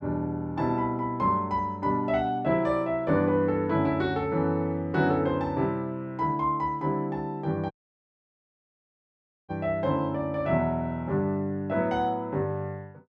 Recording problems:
dropout; at 7.5 s for 2 s

